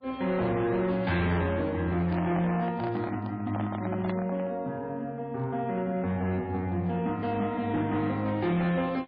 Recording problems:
codec artefacts; MP3, log-spectral distance 2 dB, nothing above 4.2 kHz
distortion; hard clipping, signal-to-distortion ratio 11 dB
handling noise; from 2 to 4.5 s; peak -3 dB vs average level

